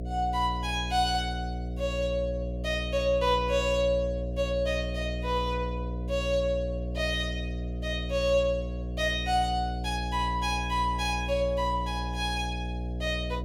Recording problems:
hum; 60 Hz, harmonics up to 720 Hz, SNR 5 dB

